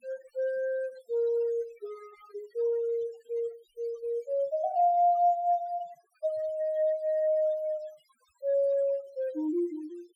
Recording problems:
denoising artefacts; signal-to-artefact ratio 27 dB

